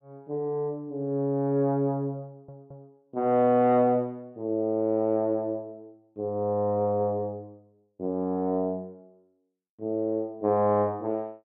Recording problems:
audio stuttering; at 2.5 s

